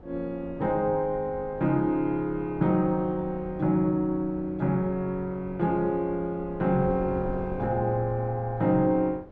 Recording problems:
wind noise; below 420 Hz, SNR 16 dB

